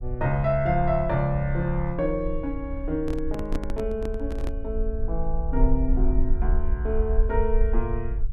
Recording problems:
rumble; below 50 Hz, SNR 2 dB
handling noise; from 3 to 4.5 s; peak 0 dB vs average level

